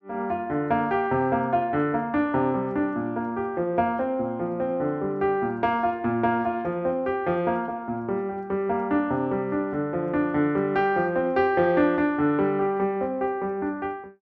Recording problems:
none

